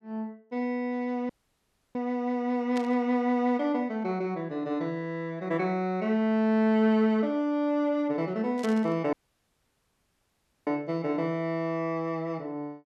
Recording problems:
audio cutting out; at 1.5 s for 0.5 s and at 9 s for 1.5 s
burst of static; at 3 s and at 8.5 s; peak -8 dB vs average level

